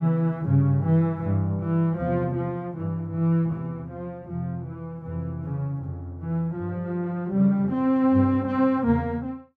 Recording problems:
none

